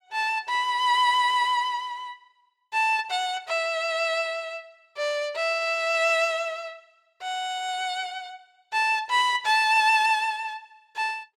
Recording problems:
none

